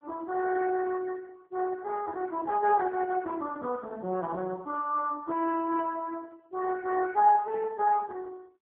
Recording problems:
telephone audio; 190 Hz to 2.5 kHz, AMR-NB

